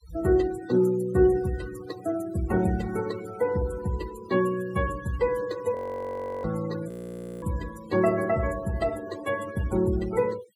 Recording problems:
denoising artefacts; signal-to-artefact ratio 17 dB
audio freezing; at 6 s for 0.5 s and at 7 s for 0.5 s

